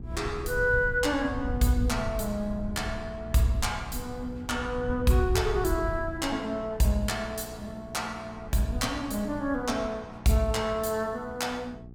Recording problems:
mains hum; 60 Hz, harmonics up to 840 Hz, SNR 18 dB
wind noise; below 98 Hz, SNR 9 dB

